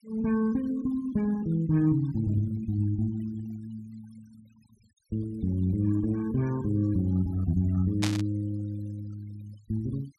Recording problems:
noise reduction artefacts; signal-to-artefact ratio 25 dB
static burst; at 8 s; peak +2 dB vs average level

